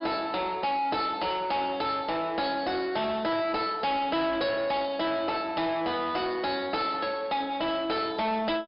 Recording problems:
treble cut off; nothing above 5.5 kHz
distortion; soft clipping, signal-to-distortion ratio 8 dB

